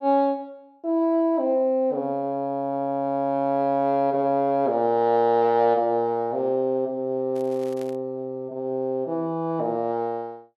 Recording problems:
crackling; at 7.5 s; loose cable, SNR 27 dB

